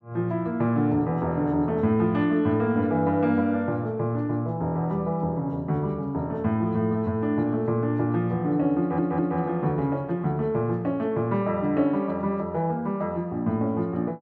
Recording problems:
stutter; at 9 s

